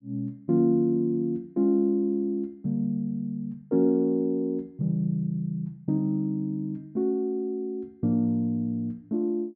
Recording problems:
none

